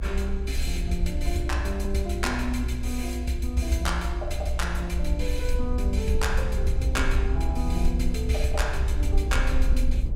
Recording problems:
low-frequency rumble; below 62 Hz, SNR -2 dB

